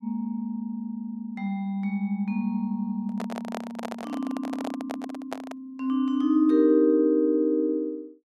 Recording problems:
handling noise; from 3 to 5.5 s; peak -4 dB vs average level

